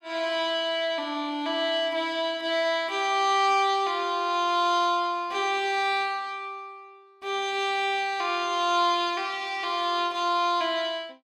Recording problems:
none

